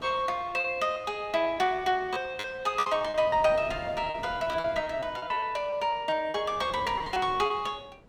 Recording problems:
wind noise; below 630 Hz, SNR 19 dB
packet loss; 12% of the sound replaced, filled with repeated pitch periods

